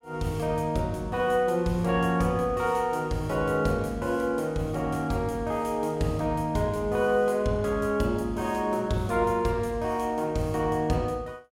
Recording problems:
none

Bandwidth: 16 kHz